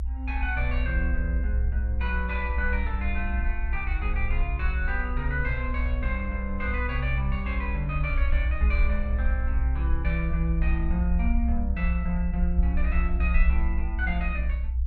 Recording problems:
rumble; below 62 Hz, strongest tone 60 Hz, SNR -4 dB

